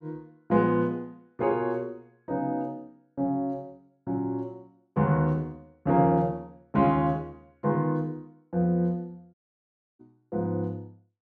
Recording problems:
audio cutting out; at 9.5 s for 0.5 s

